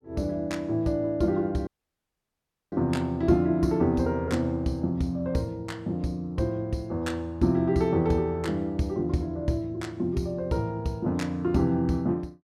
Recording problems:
dropout; at 1.5 s for 1 s

